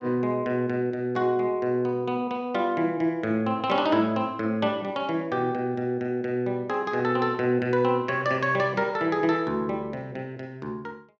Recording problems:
none

